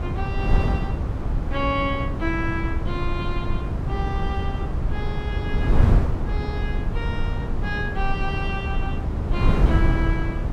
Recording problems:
wind on the microphone; below 130 Hz, SNR -5 dB

